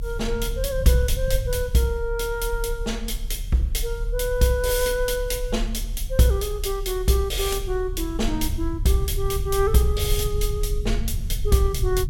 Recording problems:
rumble; below 64 Hz, strongest tone 36 Hz, SNR 6 dB

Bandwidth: 17 kHz